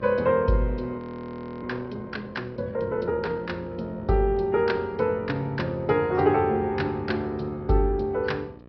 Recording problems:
treble cut off; nothing above 5.2 kHz
codec artefacts; AAC, log-spectral distance 2 dB
electrical hum; 60 Hz, harmonics up to 1.9 kHz, SNR 20 dB
frozen audio; at 1 s for 0.5 s

